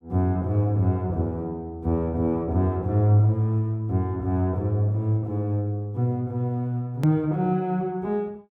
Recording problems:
hard cut with a click; at 7 s

